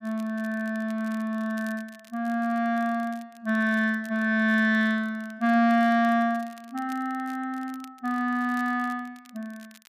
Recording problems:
crackling; vinyl, SNR 27 dB

